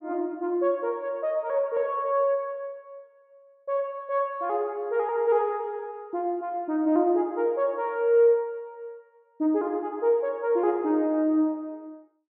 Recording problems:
none

